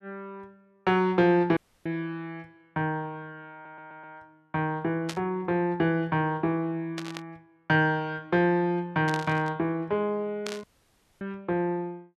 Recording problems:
dropout; at 1.5 s and at 11 s for 0.5 s
stutter; at 3.5 s
static burst; 4 times, first at 5 s; peak -4 dB vs average level

